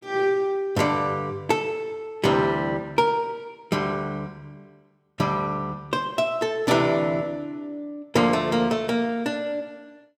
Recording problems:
none

